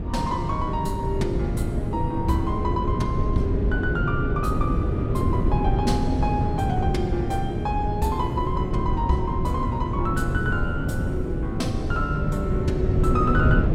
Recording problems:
wind on the microphone; below 200 Hz, SNR -2 dB

